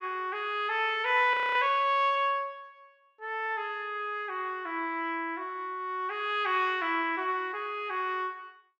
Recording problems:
audio freezing; at 1.5 s

